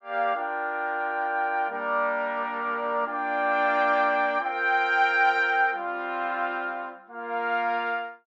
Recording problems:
none

